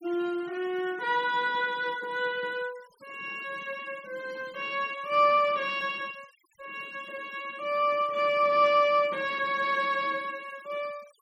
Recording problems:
denoising artefacts; signal-to-artefact ratio 24 dB

